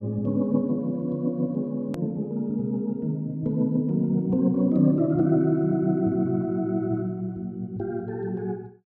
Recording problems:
edit click; at 2 s

